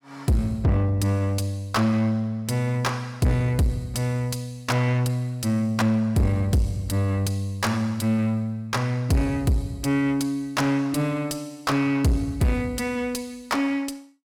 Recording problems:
distortion; soft clipping, signal-to-distortion ratio 8 dB

